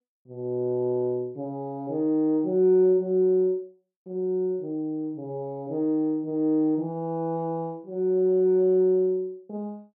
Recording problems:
none

